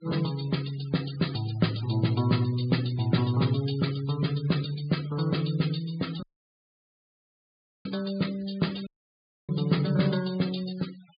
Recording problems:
treble missing; nothing above 4.9 kHz
noise reduction artefacts; signal-to-artefact ratio 18 dB
dropout; at 6 s for 1.5 s and at 9 s for 0.5 s

